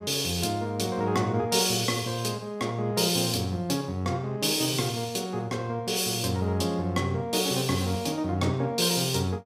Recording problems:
none

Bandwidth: 15.5 kHz